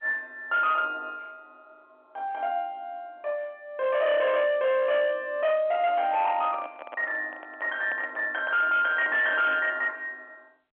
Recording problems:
telephone audio; 340 Hz to 3.6 kHz, G.711
distortion; hard clipping, signal-to-distortion ratio 11 dB
handling noise; from 6 to 9.5 s; peak -9 dB vs average level

